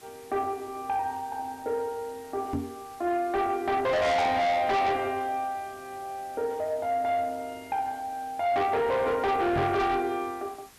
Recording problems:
distortion; soft clipping, signal-to-distortion ratio 7 dB
hiss; slope -1 dB per octave, SNR 24 dB
microphone bump; at 2.5 s and at 9.5 s; peak +2 dB vs average level

